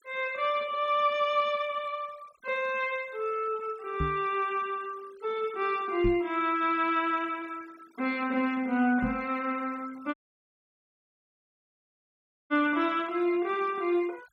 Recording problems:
denoising artefacts; signal-to-artefact ratio 25 dB
microphone bump; at 4 s, at 6 s and at 9 s; peak +1 dB vs average level
dropout; at 10 s for 2.5 s

